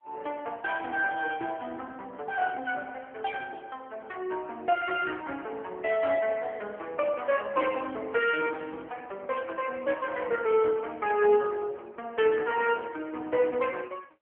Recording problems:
phone line; 320 Hz to 3.1 kHz, AMR-NB

